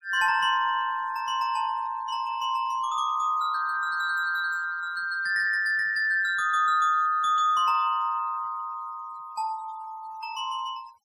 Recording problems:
noise reduction artefacts; signal-to-artefact ratio 27 dB

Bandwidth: 15.5 kHz